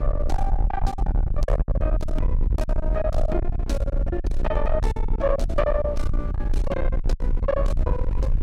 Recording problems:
distorted audio; soft clipping, signal-to-distortion ratio 7 dB
hum; 60 Hz, harmonics up to 1.3 kHz, SNR 8 dB
rumble; below 60 Hz, SNR -2 dB
wind on the microphone; below 370 Hz, SNR 17 dB
lost packets; 15% of the sound replaced, filled with silence

